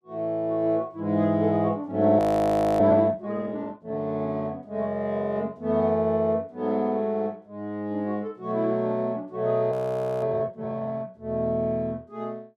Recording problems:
audio freezing; at 2 s for 0.5 s and at 9.5 s for 0.5 s

